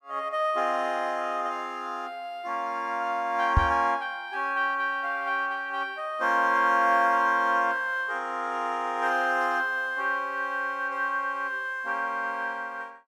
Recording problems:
microphone bump; at 3.5 s; peak +7 dB vs average level

